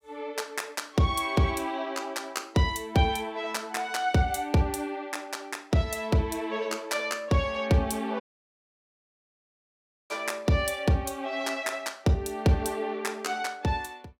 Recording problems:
dropout; at 8 s for 2 s

